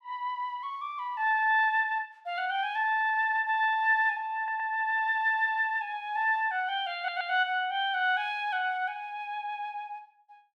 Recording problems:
audio stuttering; at 4.5 s and at 7 s

